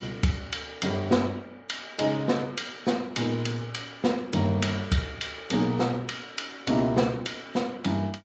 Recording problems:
lossy codec; Speex, then MP3, log-spectral distance 4 dB, nothing above 7.3 kHz

